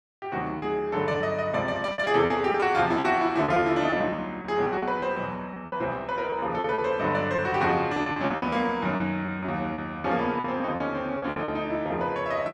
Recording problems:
lost packets; 12% of the sound replaced, filled with repeated pitch periods

